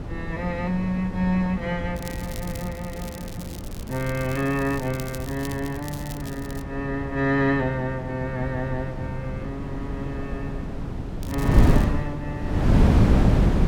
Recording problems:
wind on the microphone; below 230 Hz, SNR -1 dB
crackling; from 2 to 6.5 s and at 11 s; loose cable, SNR 14 dB

